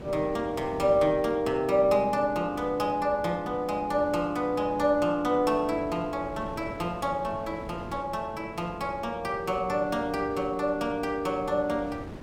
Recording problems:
wind noise; below 480 Hz, SNR 16 dB

